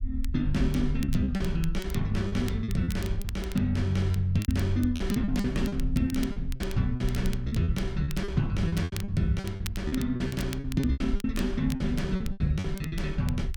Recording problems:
rumble; below 62 Hz, SNR 8 dB
crackling; vinyl, SNR 17 dB
lost packets; 14% of the sound replaced, filled with repeated pitch periods

